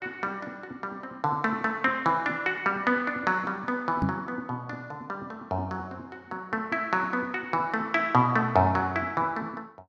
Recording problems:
microphone bump; at 4 s; peak +4 dB vs average level

